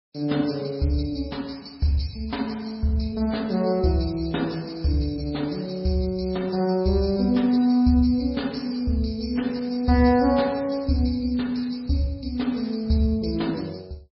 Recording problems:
lossy compression; MP3, log-spectral distance 5 dB, nothing above 5.5 kHz

